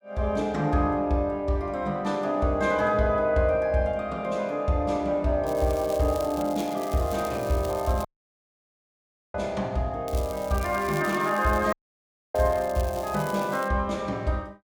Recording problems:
crackling; from 5.5 to 8 s and from 10 to 14 s; loose cable, SNR 18 dB
dropout; at 8 s for 1.5 s and at 12 s for 0.5 s

